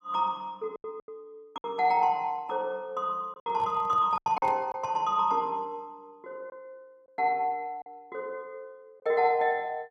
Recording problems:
lost packets; 6% of the sound replaced, filled with silence
microphone handling noise; from 3.5 to 5 s; peak -10 dB vs average level

